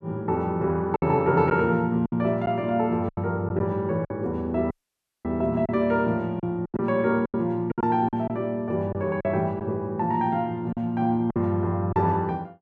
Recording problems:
lost packets; 7% of the sound replaced, filled with silence
audio cutting out; at 4.5 s for 0.5 s

